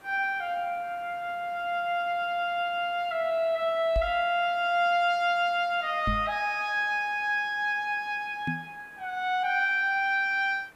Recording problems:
hiss; SNR 27 dB
knock on the microphone; at 4 s, at 6 s and at 8.5 s; peak -1 dB vs average level

